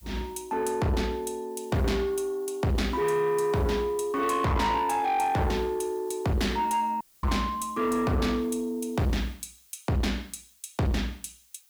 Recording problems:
distorted audio; soft clipping, signal-to-distortion ratio 6 dB
background hiss; slope +4 dB per octave, SNR 27 dB
audio cutting out; at 7 s

